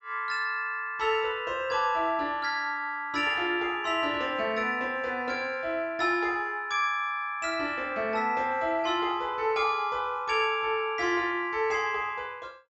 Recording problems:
treble cut off; nothing above 7.6 kHz

